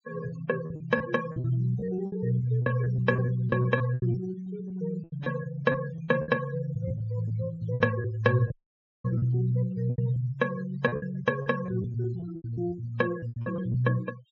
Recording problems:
treble missing; nothing above 7.5 kHz
denoising artefacts; signal-to-artefact ratio 16 dB
lost packets; 13% of the sound replaced, filled with repeated pitch periods
dropout; at 8.5 s for 0.5 s

